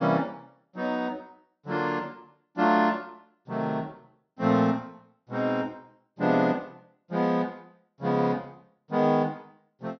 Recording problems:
treble cut off; nothing above 6.1 kHz

